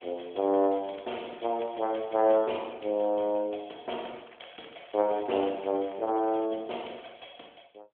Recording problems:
phone line; 260 Hz to 3.4 kHz, AMR-NB
crackle; from 0.5 to 2.5 s and from 4.5 to 6.5 s; loose cable, SNR 26 dB

